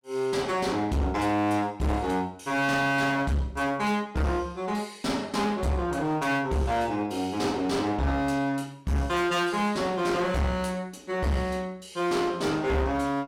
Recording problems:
distorted audio; hard clipping, uneven, signal-to-distortion ratio 7 dB

